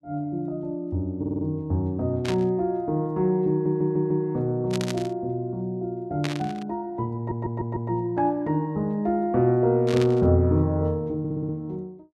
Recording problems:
stutter; 4 times, first at 1 s
burst of static; 4 times, first at 2 s; peak -2 dB vs average level

